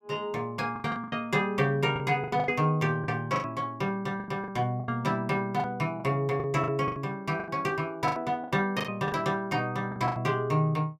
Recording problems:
packet loss; 13% of the sound replaced, filled with the last packet

